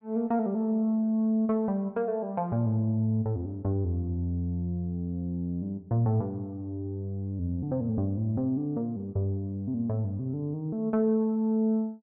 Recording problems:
none

